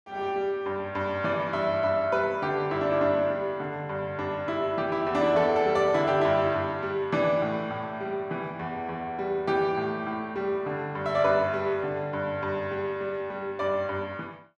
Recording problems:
none

